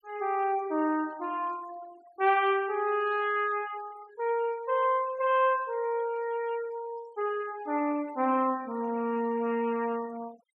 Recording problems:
denoising artefacts; signal-to-artefact ratio 23 dB

